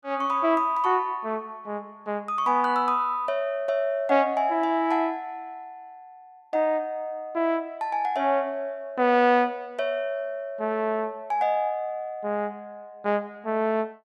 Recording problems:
none

